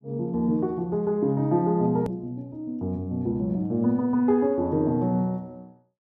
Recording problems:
click at an edit; at 2 s

